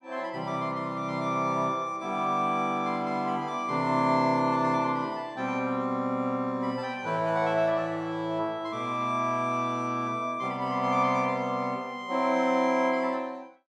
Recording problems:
none

